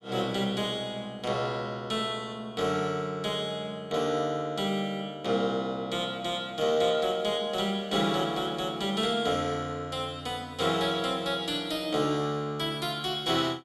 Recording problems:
none

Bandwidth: 14.5 kHz